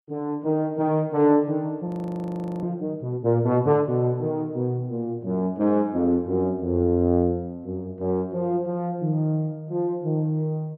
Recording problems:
frozen audio; at 2 s for 1 s

